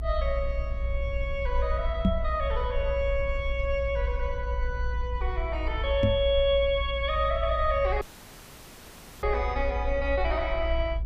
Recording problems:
low-frequency rumble; below 60 Hz, strongest tone 58 Hz, SNR 4 dB
microphone thump; at 2 s and at 6 s; peak +8 dB vs average level
audio cutting out; at 8 s for 1 s

